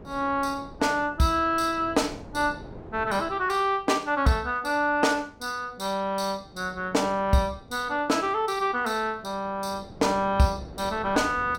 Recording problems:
wind noise; below 490 Hz, SNR 20 dB

